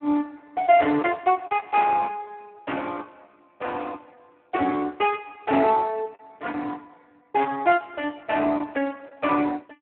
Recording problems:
phone line; 190 Hz to 3.5 kHz, Speex
lost packets; 1.9% of the sound replaced, filled with the last packet

